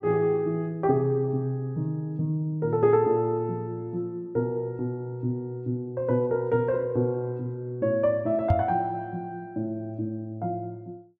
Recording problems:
microphone bump; at 8.5 s; peak +7 dB vs average level

